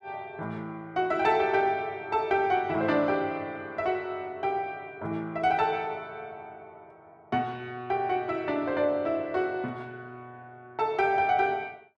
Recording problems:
none

